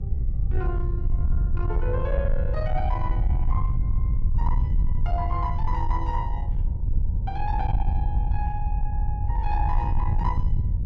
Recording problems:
distortion; soft clipping, signal-to-distortion ratio 12 dB
hum; 50 Hz, harmonics up to 600 Hz, SNR 22 dB
rumble; below 78 Hz, SNR -6 dB

